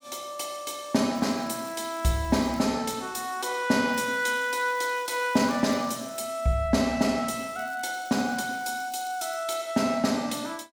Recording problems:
crackling; from 1 to 2.5 s, from 4 to 6 s and from 7.5 to 9.5 s; loose cable, SNR 24 dB

